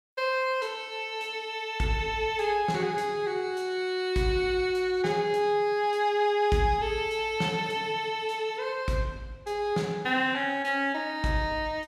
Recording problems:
none

